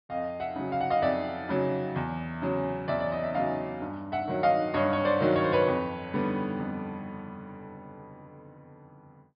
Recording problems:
treble missing; nothing above 5.1 kHz

